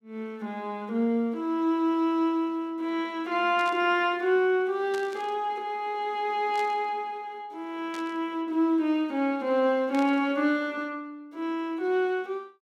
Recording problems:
static burst; 5 times, first at 3.5 s; peak -10 dB vs average level

